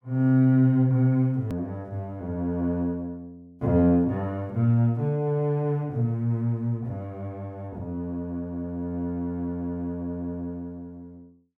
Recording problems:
click at an edit; at 1.5 s

